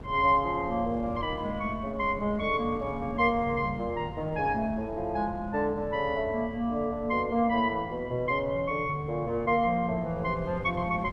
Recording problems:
wind noise; below 300 Hz, SNR 15 dB

